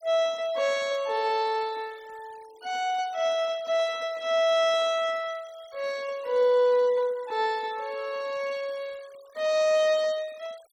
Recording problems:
denoising artefacts; signal-to-artefact ratio 25 dB

